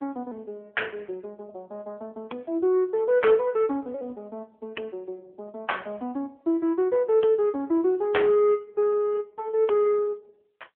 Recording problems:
phone line; 280 Hz to 3.4 kHz, AMR-NB

